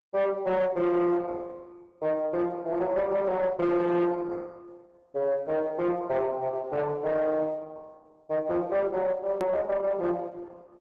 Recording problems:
lossy compression; Opus, log-spectral distance 2 dB, nothing above 13.1 kHz
distortion; soft clipping, signal-to-distortion ratio 10 dB
hard cut with a click; at 9.5 s

